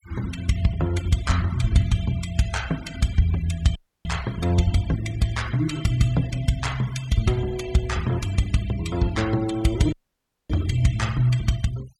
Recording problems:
noise reduction artefacts; signal-to-artefact ratio 18 dB
dropout; at 4 s and at 10 s for 0.5 s

